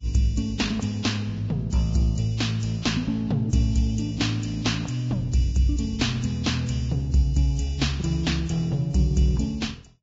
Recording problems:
lossy codec; Vorbis, log-spectral distance 3 dB, nothing above 7.3 kHz

